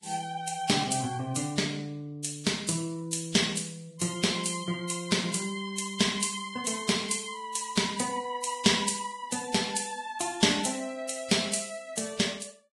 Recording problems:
lossy compression; Vorbis, log-spectral distance 6 dB, nothing above 10.4 kHz

